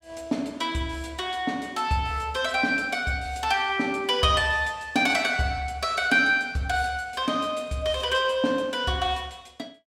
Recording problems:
none

